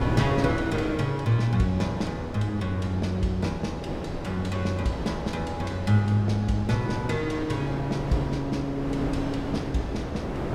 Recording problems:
wind noise; below 570 Hz, SNR 6 dB

